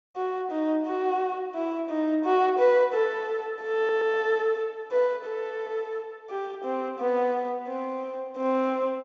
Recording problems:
low-pass filter; nothing above 7.4 kHz
audio stuttering; at 4 s

